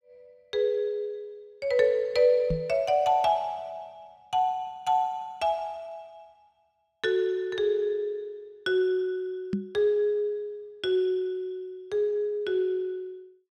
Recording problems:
microphone thump; at 2.5 s and at 9.5 s; peak +2 dB vs average level

